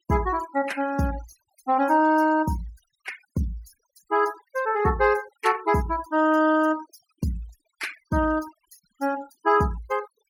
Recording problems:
noise reduction artefacts; signal-to-artefact ratio 20 dB

